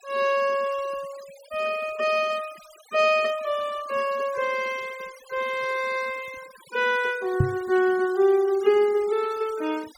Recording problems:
denoising artefacts; signal-to-artefact ratio 21 dB
microphone bump; at 7.5 s; peak +7 dB vs average level

